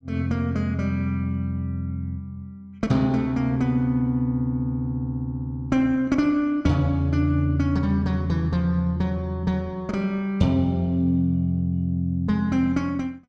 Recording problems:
none

